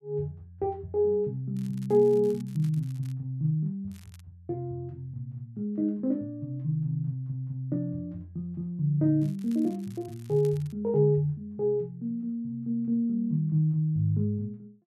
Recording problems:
crackle; from 1.5 to 3 s, at 4 s and from 9 to 11 s; loose cable, SNR 27 dB

